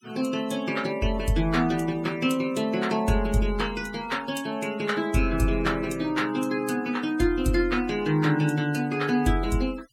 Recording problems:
noise reduction artefacts; signal-to-artefact ratio 21 dB

